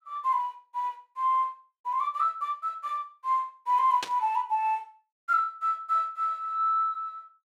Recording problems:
burst of static; at 4 s; peak 0 dB vs average level

